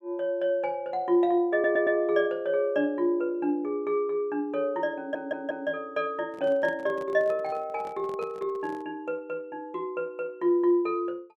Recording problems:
stutter; at 1.5 s and at 5 s
microphone handling noise; from 6.5 to 9 s; peak -11 dB vs average level

